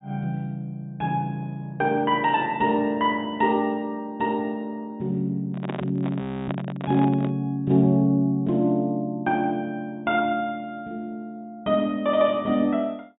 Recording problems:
treble cut off; nothing above 4 kHz
handling noise; from 5.5 to 7.5 s; peak -2 dB vs average level
frozen audio; at 6 s

